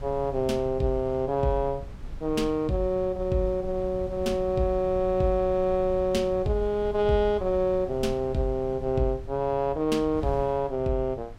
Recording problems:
wind noise; below 100 Hz, SNR 15 dB

